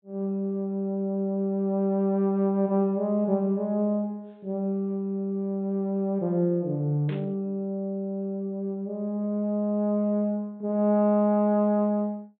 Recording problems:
low-pass filter; nothing above 4 kHz
static burst; at 7 s; peak -14 dB vs average level

